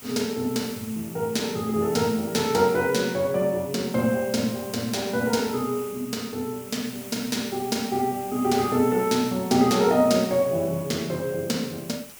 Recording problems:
background hiss; SNR 16 dB

